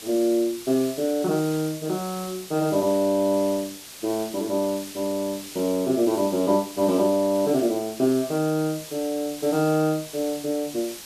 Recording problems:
background hiss; slope +1 dB per octave, SNR 14 dB

